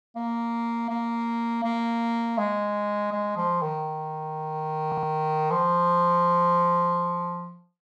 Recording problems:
audio stuttering; at 5 s

